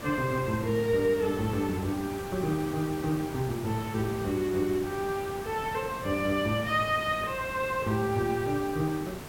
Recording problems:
background hiss; slope -5 dB per octave, SNR 11 dB

